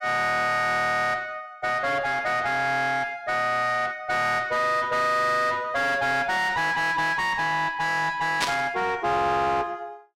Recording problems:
distortion; soft clipping, signal-to-distortion ratio 6 dB
static burst; at 8.5 s; peak +3 dB vs average level

